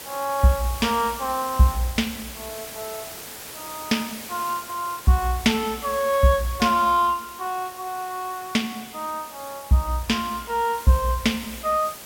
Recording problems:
hiss; slope -2 dB per octave, SNR 13 dB

